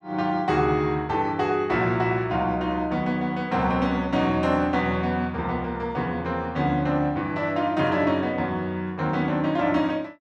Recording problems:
none

